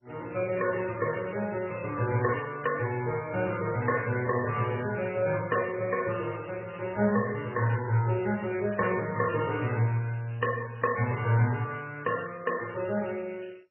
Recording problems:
codec artefacts; MP3, then MP2, log-spectral distance 7 dB, nothing above 2.6 kHz

